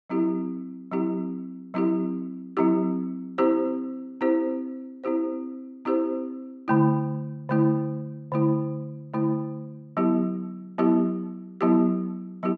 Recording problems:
none

